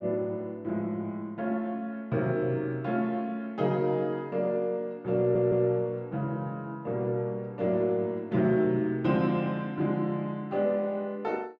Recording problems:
audio stuttering; at 5 s

